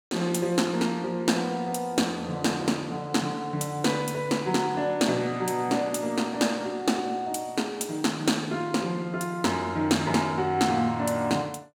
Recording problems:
none

